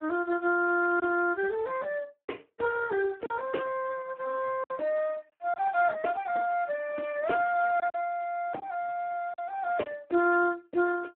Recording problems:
phone line; 240 Hz to 2 kHz, Speex
lost packets; 3% of the sound replaced, filled with silence

